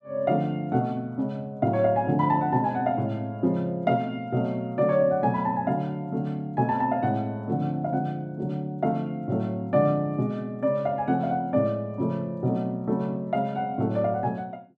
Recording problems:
none

